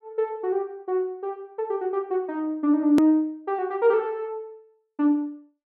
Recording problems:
hard cut with a click; at 3 s

